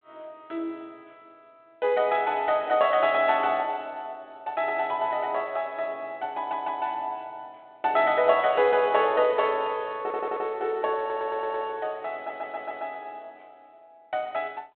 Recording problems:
phone line; 240 Hz to 3.5 kHz, G.726
audio stuttering; 4 times, first at 6.5 s

